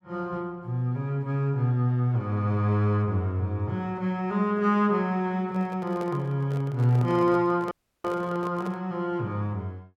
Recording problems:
microphone handling noise; from 5.5 to 9 s; peak -9 dB vs average level
audio cutting out; at 7.5 s

